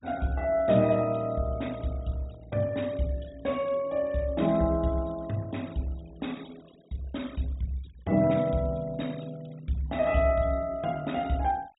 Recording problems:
low-pass filter; nothing above 4 kHz
noise reduction artefacts; signal-to-artefact ratio 24 dB

